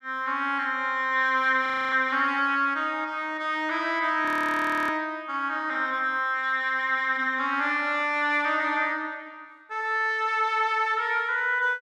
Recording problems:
audio freezing; at 1.5 s and at 4.5 s for 0.5 s

